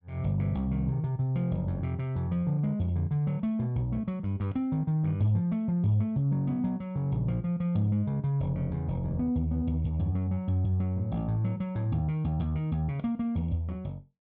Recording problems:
none

